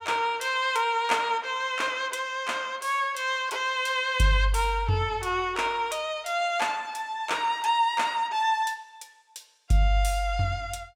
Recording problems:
none

